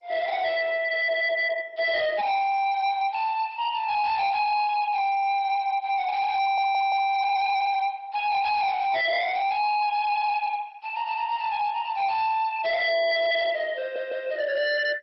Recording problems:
lossy compression; MP2, log-spectral distance 3 dB, nothing above 4.8 kHz
distorted audio; hard clipping, signal-to-distortion ratio 6 dB
stutter; at 6.5 s and at 14 s

